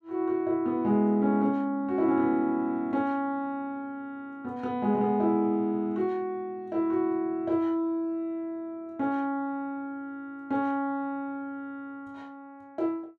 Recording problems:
none

